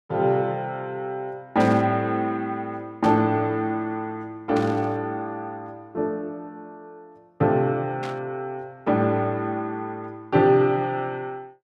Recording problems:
static burst; 4 times, first at 1.5 s; peak -8 dB vs average level

